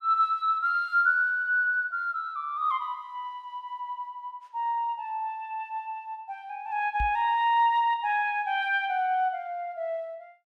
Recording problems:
microphone bump; at 7 s; peak -3 dB vs average level

